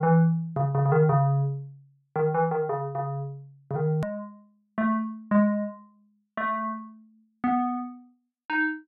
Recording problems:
hard cut with a click; at 4 s

